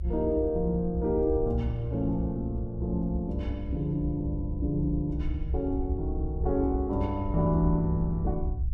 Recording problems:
low-frequency rumble; below 70 Hz, SNR 5 dB

